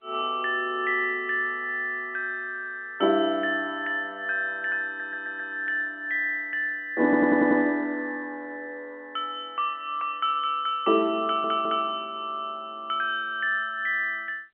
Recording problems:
phone line; 260 Hz to 3.6 kHz, G.711
audio stuttering; at 5 s, at 7 s and at 11 s

